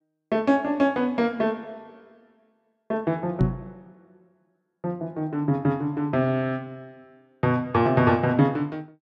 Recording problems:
microphone thump; at 3.5 s; peak +6 dB vs average level

